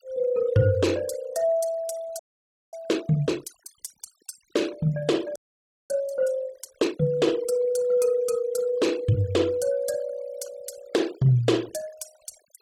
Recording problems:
denoising artefacts; signal-to-artefact ratio 22 dB
frozen audio; at 2 s for 0.5 s and at 5.5 s for 0.5 s

